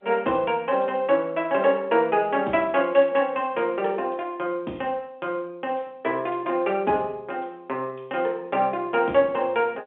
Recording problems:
phone line; 220 Hz to 3.5 kHz, G.711

